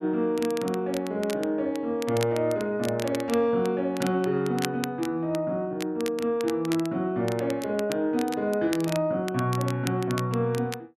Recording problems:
crackle; vinyl, SNR 14 dB

